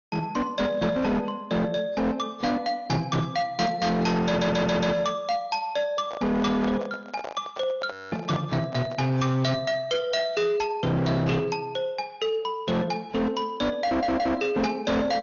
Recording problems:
low-pass filter; nothing above 6.7 kHz
lossy codec; AAC, log-spectral distance 2 dB
distortion; hard clipping, signal-to-distortion ratio 8 dB
stutter; at 4.5 s and at 14 s
microphone handling noise; from 6 to 9 s; peak -4 dB vs average level
audio freezing; at 8 s

